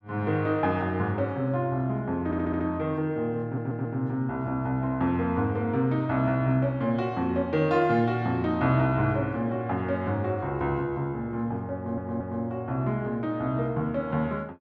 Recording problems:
stutter; at 2.5 s, at 3.5 s and at 12 s

